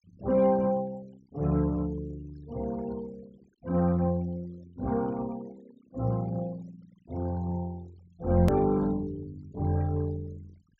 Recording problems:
treble cut off; nothing above 8 kHz
noise reduction artefacts; signal-to-artefact ratio 25 dB
hard cut with a click; at 8.5 s

